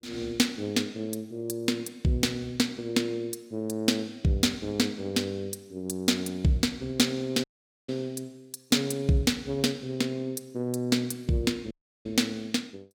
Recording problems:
dropout; at 7.5 s and at 12 s

